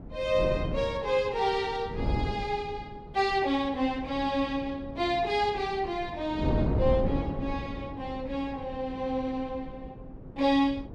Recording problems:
wind noise; below 300 Hz, SNR 7 dB

